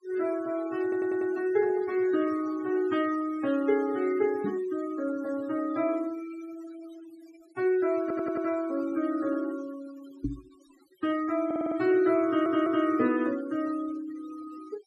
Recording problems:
noise reduction artefacts; signal-to-artefact ratio 19 dB
audio stuttering; 4 times, first at 1 s
knock on the microphone; at 4.5 s and at 10 s; peak +1 dB vs average level

